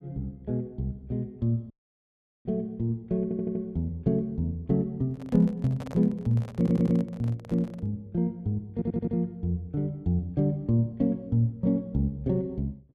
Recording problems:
dropout; at 1.5 s for 1 s
stutter; at 3 s, at 6.5 s and at 8.5 s
handling noise; from 5 to 8 s; peak -9 dB vs average level

